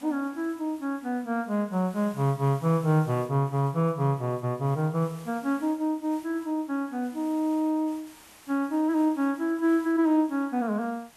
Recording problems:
hiss; slope -1 dB per octave, SNR 25 dB

